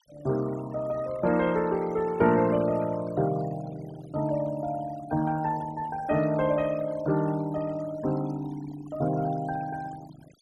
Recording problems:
denoising artefacts; signal-to-artefact ratio 17 dB

